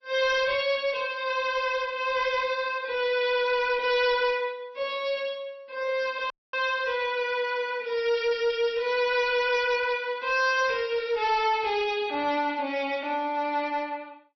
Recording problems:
codec artefacts; MP3, then MP3, log-spectral distance 2 dB, nothing above 5.5 kHz
distortion; hard clipping, uneven, signal-to-distortion ratio 11 dB
audio cutting out; at 6.5 s

